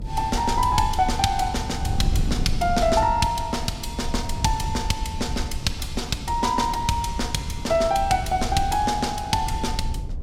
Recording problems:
rumble; below 92 Hz, SNR 9 dB
wind on the microphone; below 140 Hz, SNR 11 dB

